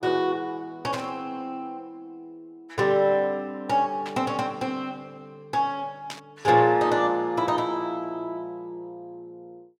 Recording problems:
burst of static; at 1 s, at 4 s and at 6 s; peak -6 dB vs average level

